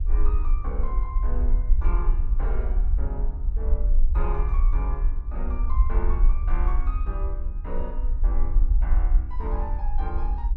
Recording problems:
rumble; below 46 Hz, strongest tone 22 Hz, SNR -11 dB
wind noise; below 290 Hz, SNR 16 dB

